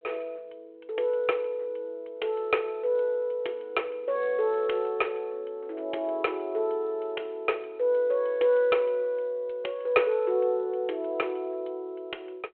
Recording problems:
phone line; 320 Hz to 3.3 kHz, G.726

